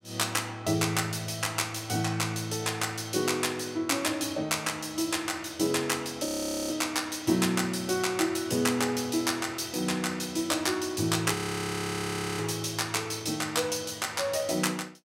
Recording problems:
audio freezing; at 6.5 s and at 11 s for 1 s

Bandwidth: 16 kHz